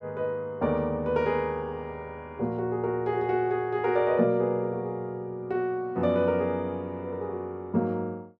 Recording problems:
none

